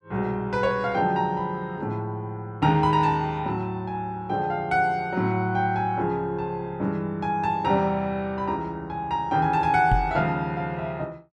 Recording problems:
microphone thump; at 10 s; peak +5 dB vs average level

